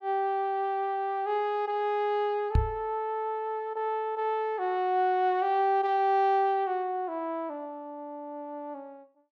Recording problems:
microphone thump; at 2.5 s; peak +7 dB vs average level

